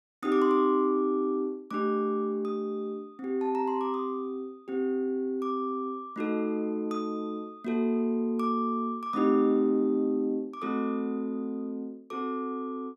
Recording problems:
none

